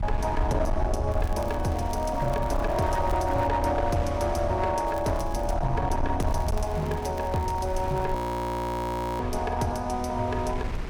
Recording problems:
distorted audio; hard clipping, uneven, signal-to-distortion ratio 11 dB
low-frequency rumble; below 80 Hz, SNR 6 dB
wind on the microphone; below 1.1 kHz, SNR 15 dB
crackle; from 1 to 3.5 s, at 5 s and from 6 to 8 s; loose cable, SNR 22 dB
frozen audio; at 8 s for 1 s

